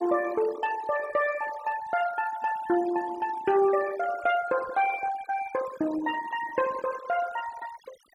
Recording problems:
noise reduction artefacts; signal-to-artefact ratio 14 dB

